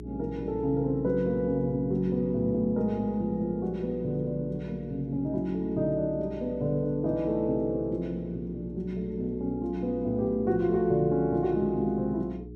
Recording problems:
electrical hum; 60 Hz, harmonics up to 420 Hz, SNR 14 dB

